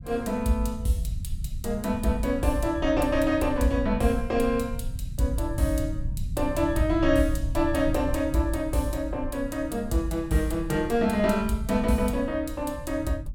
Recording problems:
rumble; below 96 Hz, SNR 9 dB

